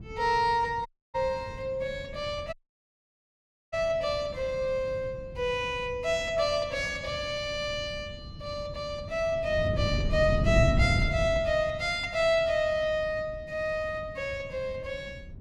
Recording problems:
wind on the microphone; below 170 Hz, SNR 7 dB
audio cutting out; at 1 s and at 2.5 s for 1 s

